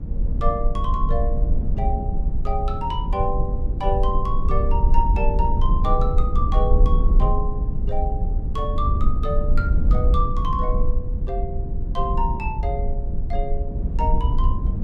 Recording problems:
low-frequency rumble; below 62 Hz, SNR -4 dB

